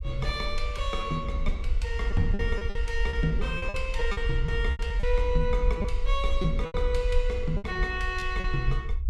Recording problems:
rumble; below 56 Hz, SNR 0 dB
lost packets; 9% of the sound replaced, filled with repeated pitch periods

